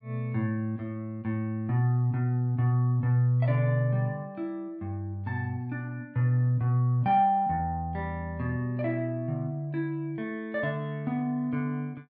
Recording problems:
none

